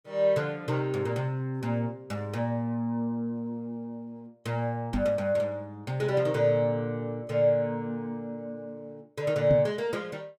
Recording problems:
microphone bump; at 5 s and at 9.5 s; peak +4 dB vs average level

